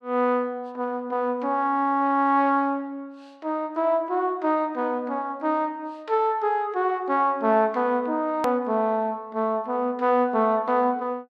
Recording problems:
edit click; at 8.5 s

